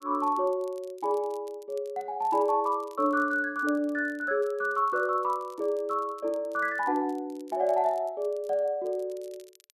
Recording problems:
crackle; vinyl, SNR 29 dB

